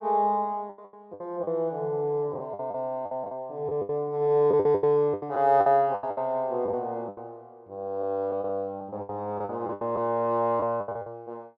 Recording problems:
lost packets; 14% of the sound replaced, filled with the last packet

